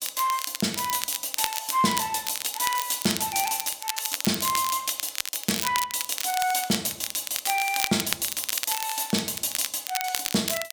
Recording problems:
crackling; vinyl, SNR 4 dB

